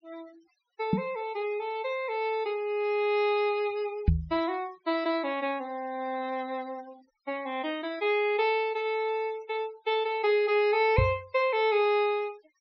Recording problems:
treble missing; nothing above 6 kHz
denoising artefacts; signal-to-artefact ratio 24 dB
microphone thump; at 1 s, at 4 s and at 11 s; peak +8 dB vs average level

